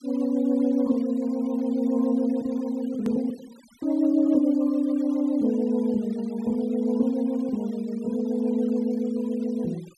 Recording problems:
noise reduction artefacts; signal-to-artefact ratio 27 dB
click at an edit; at 3 s

